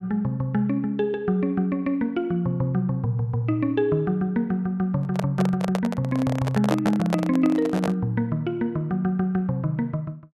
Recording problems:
handling noise; from 5 to 8 s; peak +2 dB vs average level

